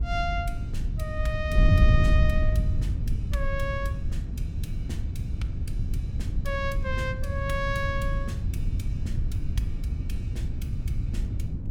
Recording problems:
wind on the microphone; below 110 Hz, SNR -4 dB

